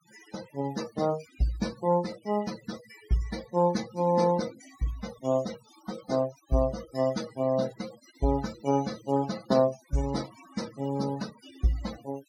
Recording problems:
denoising artefacts; signal-to-artefact ratio 15 dB

